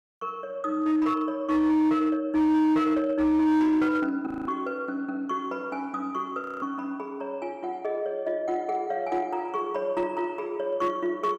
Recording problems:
distortion; hard clipping, uneven, signal-to-distortion ratio 11 dB
audio freezing; at 4.5 s and at 6.5 s

